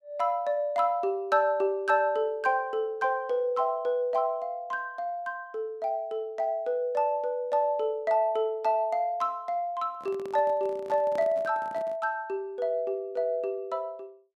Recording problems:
microphone handling noise; from 10 to 12 s; peak -10 dB vs average level

